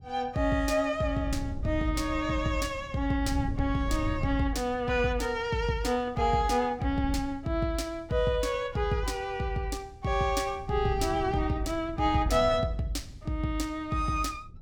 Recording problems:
wind noise; below 120 Hz, SNR 10 dB

